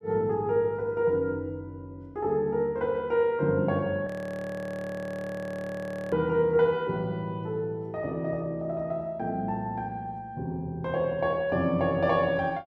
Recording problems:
audio freezing; at 4 s for 2 s

